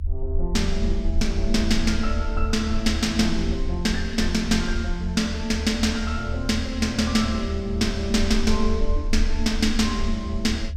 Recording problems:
rumble; below 74 Hz, SNR 5 dB

